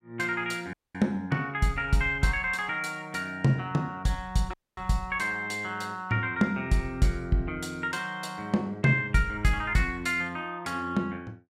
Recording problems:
audio cutting out; at 0.5 s and at 4.5 s

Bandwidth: 16.5 kHz